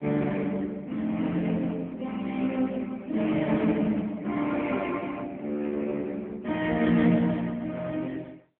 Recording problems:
phone line; 130 Hz to 3.4 kHz, AMR-NB

